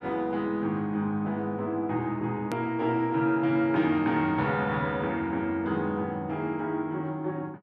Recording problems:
edit click; at 2.5 s

